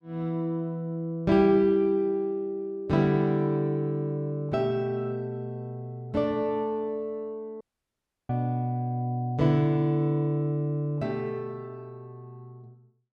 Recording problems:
dropout; at 7.5 s for 0.5 s

